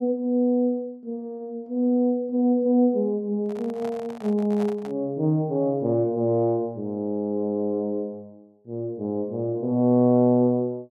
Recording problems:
handling noise; from 3.5 to 5 s; peak -10 dB vs average level

